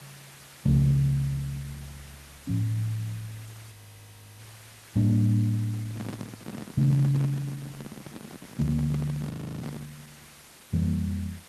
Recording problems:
lossy compression; Opus, log-spectral distance 6 dB, nothing above 12.7 kHz
background hiss; slope -1 dB per octave, SNR 21 dB
audio freezing; at 3.5 s for 0.5 s and at 9.5 s
handling noise; from 5.5 to 10 s; peak -4 dB vs average level

